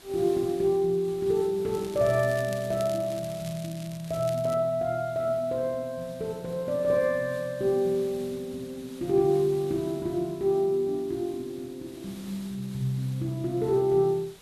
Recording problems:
background hiss; slope -2 dB per octave, SNR 22 dB
crackle; from 1.5 to 4.5 s; loose cable, SNR 19 dB

